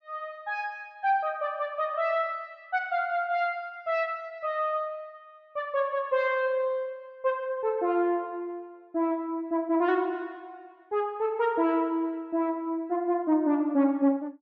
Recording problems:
none

